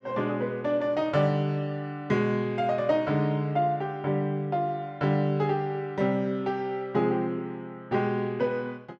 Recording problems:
none

